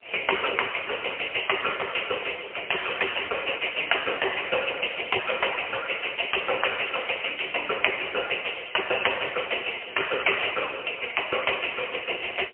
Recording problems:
telephone audio; 340 Hz to 3.1 kHz, AMR-NB, then MP3

